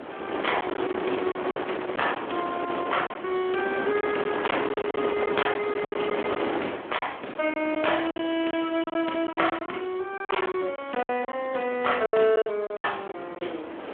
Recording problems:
telephone audio; 260 Hz to 3.4 kHz, Speex
wind noise; below 1.2 kHz, SNR 5 dB
lost packets; 10% of the sound replaced, filled with silence

